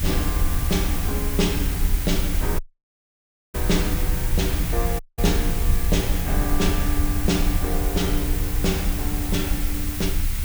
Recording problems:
hum; 50 Hz, harmonics up to 500 Hz, SNR 20 dB
background hiss; SNR 3 dB
low-frequency rumble; below 74 Hz, SNR 0 dB
audio cutting out; at 2.5 s for 1 s and at 5 s

